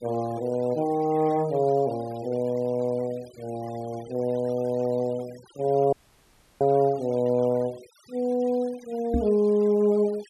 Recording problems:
noise reduction artefacts; signal-to-artefact ratio 24 dB
dropout; at 6 s for 0.5 s
microphone bump; at 9 s; peak +2 dB vs average level

